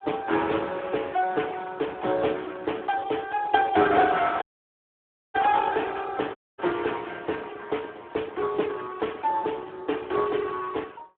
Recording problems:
telephone audio; 300 Hz to 3.6 kHz, Speex
audio cutting out; at 4.5 s for 1 s and at 6.5 s

